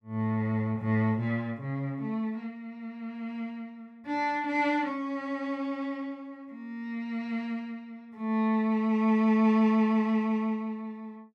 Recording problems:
none

